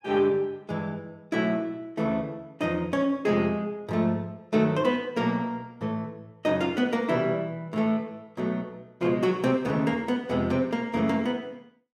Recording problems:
none

